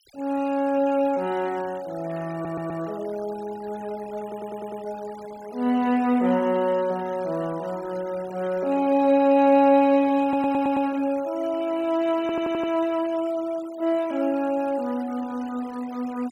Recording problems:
denoising artefacts; signal-to-artefact ratio 23 dB
audio stuttering; 4 times, first at 2.5 s

